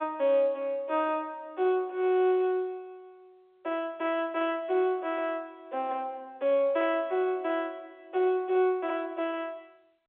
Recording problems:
telephone audio; 280 Hz to 3.9 kHz, G.711

